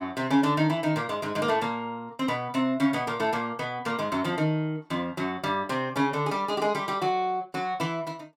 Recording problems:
none

